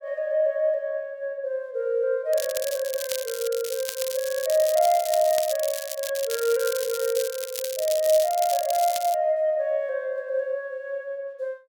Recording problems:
crackle; from 2.5 to 6 s and from 6 to 9 s; loose cable, SNR 8 dB

